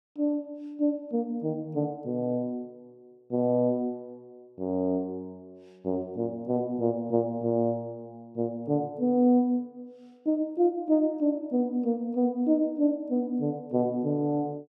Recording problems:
none

